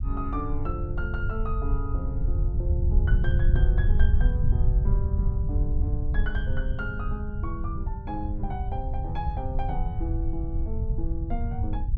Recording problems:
rumble; below 78 Hz, SNR -8 dB

